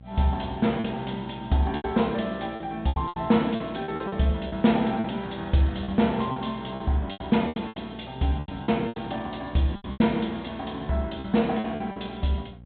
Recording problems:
low-pass filter; nothing above 4 kHz
hum; 60 Hz, harmonics up to 600 Hz, SNR 20 dB
packet loss; 12% of the sound replaced, filled with repeated pitch periods

